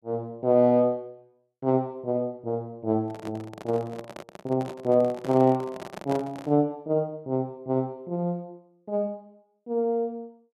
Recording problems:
handling noise; from 3 to 6.5 s; peak -5 dB vs average level

